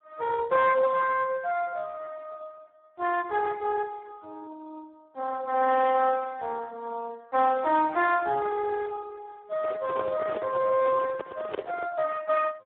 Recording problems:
telephone audio; 300 Hz to 2.8 kHz, Speex
microphone handling noise; from 9.5 to 12 s; peak -1 dB vs average level

